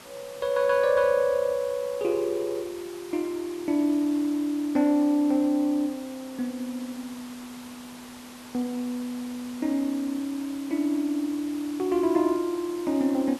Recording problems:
hiss; slope -3 dB per octave, SNR 18 dB

